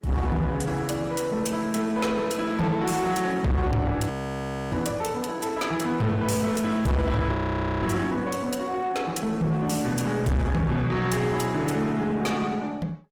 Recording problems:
lossy codec; Opus, log-spectral distance 3 dB, nothing above 19 kHz
distortion; soft clipping, signal-to-distortion ratio 6 dB
audio freezing; at 4 s for 0.5 s and at 7.5 s

